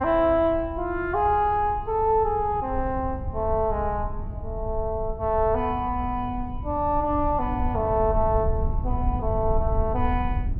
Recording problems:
low-frequency rumble; below 88 Hz, SNR 7 dB

